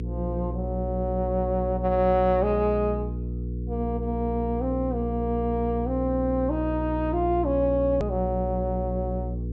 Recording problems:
low-pass filter; nothing above 8 kHz
electrical hum; 60 Hz, harmonics up to 480 Hz, SNR 5 dB
click at an edit; at 8 s

